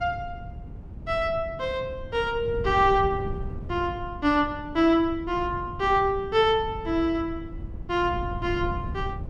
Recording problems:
wind noise; below 150 Hz, SNR 12 dB

